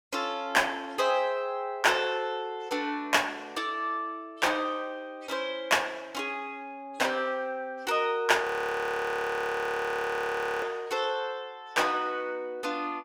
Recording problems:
frozen audio; at 8.5 s for 2 s

